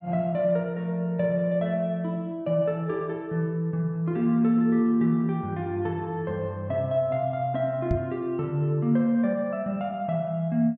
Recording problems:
microphone thump; at 8 s; peak +3 dB vs average level

